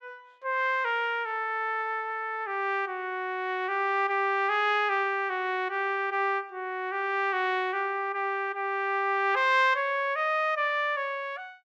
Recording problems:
none

